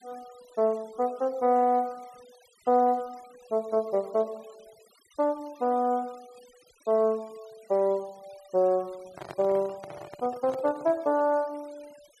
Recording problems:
noise reduction artefacts; signal-to-artefact ratio 27 dB
handling noise; from 9 to 11 s; peak -9 dB vs average level

